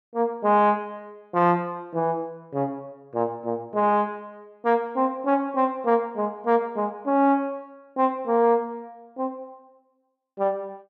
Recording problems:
none

